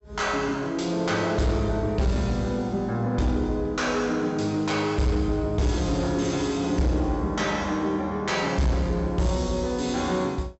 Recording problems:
low-pass filter; nothing above 7.7 kHz
distortion; soft clipping, signal-to-distortion ratio 10 dB

